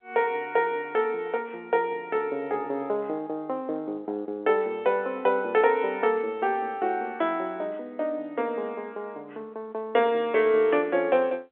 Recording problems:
phone line; 300 Hz to 3.5 kHz, G.711

